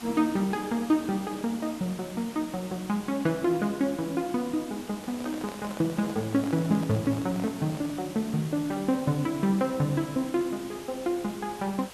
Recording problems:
background hiss; slope -2 dB per octave, SNR 15 dB
handling noise; from 5 to 8 s; peak -8 dB vs average level

